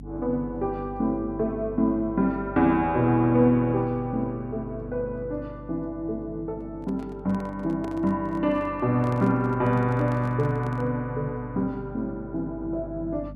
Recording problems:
electrical hum; 50 Hz, harmonics up to 300 Hz, SNR 16 dB
handling noise; from 6.5 to 11 s; peak -10 dB vs average level

